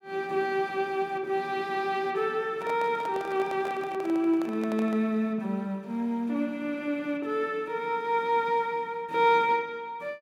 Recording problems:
microphone handling noise; from 2.5 to 5 s; peak -8 dB vs average level

